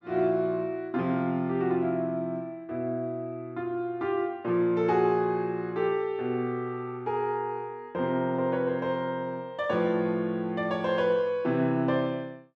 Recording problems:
none

